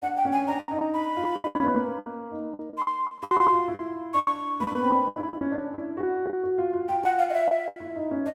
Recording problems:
lost packets; 15% of the sound replaced, filled with the last packet

